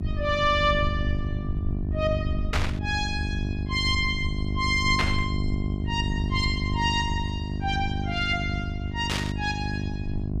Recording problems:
hum; 50 Hz, harmonics up to 750 Hz, SNR 4 dB
rumble; below 80 Hz, SNR 5 dB
burst of static; at 2.5 s, at 5 s and at 9 s; peak +3 dB vs average level

